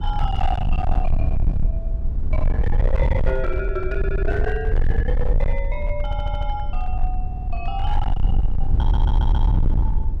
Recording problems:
distortion; hard clipping, signal-to-distortion ratio 6 dB
rumble; below 66 Hz, SNR -6 dB
stutter; 4 times, first at 4 s

